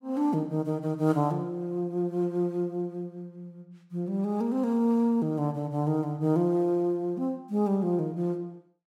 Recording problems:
none

